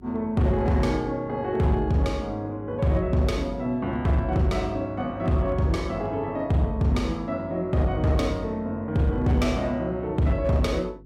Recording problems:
distortion; hard clipping, signal-to-distortion ratio 12 dB
hum; 50 Hz, harmonics up to 400 Hz, SNR 24 dB

